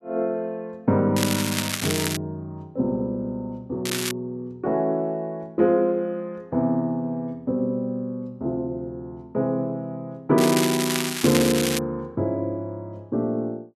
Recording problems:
crackling; from 1 to 2 s, at 4 s and from 10 to 12 s; loose cable, SNR 2 dB

